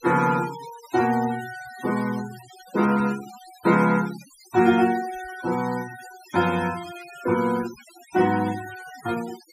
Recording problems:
denoising artefacts; signal-to-artefact ratio 16 dB

